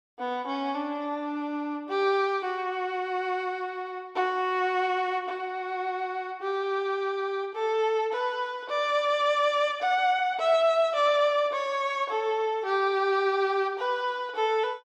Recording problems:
none

